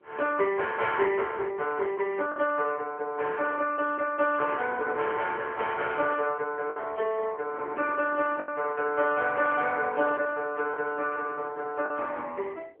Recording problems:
phone line; 320 Hz to 3.3 kHz, AMR-NB
wind on the microphone; below 540 Hz, SNR 19 dB
packet loss; 1.9% of the sound replaced, filled with the last packet

